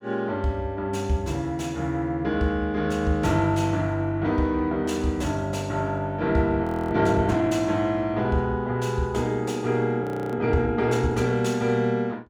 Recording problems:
frozen audio; at 6.5 s and at 10 s

